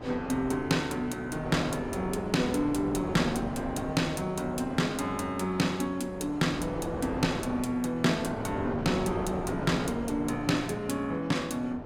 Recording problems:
wind noise; below 700 Hz, SNR 8 dB

